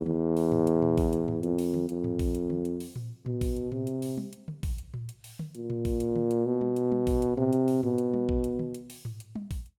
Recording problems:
none

